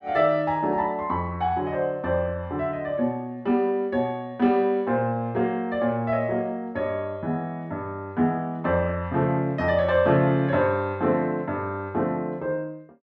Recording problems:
none

